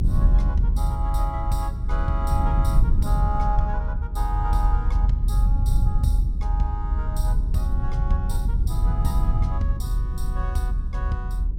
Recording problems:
low-frequency rumble; below 68 Hz, strongest tone 42 Hz, SNR -8 dB

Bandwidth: 16.5 kHz